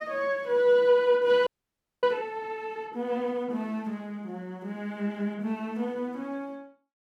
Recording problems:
audio freezing; at 1.5 s for 0.5 s

